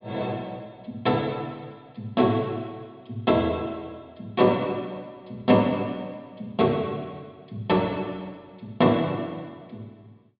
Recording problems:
treble cut off; nothing above 5 kHz

